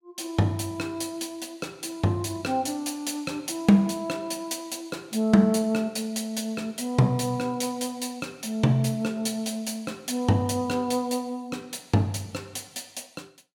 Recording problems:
none

